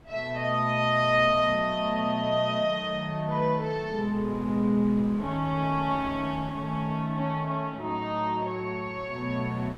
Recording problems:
wind noise; below 620 Hz, SNR 20 dB

